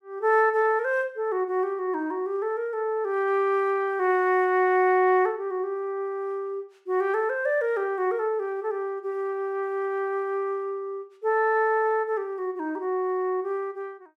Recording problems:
none

